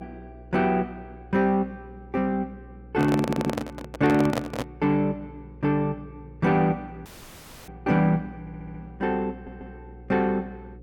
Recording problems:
hum; 60 Hz, harmonics up to 540 Hz, SNR 21 dB
handling noise; from 3 to 4.5 s; peak +2 dB vs average level
audio stuttering; at 3 s, at 8.5 s and at 9.5 s
dropout; at 7 s for 0.5 s

